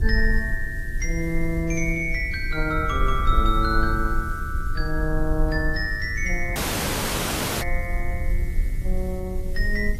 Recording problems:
lossy compression; AAC, log-spectral distance 2 dB, nothing above 14.3 kHz
electrical hum; 60 Hz, harmonics up to 360 Hz, SNR 19 dB
background hiss; slope +1 dB per octave, SNR 23 dB
rumble; below 54 Hz, SNR 2 dB
dropout; at 6.5 s for 1 s

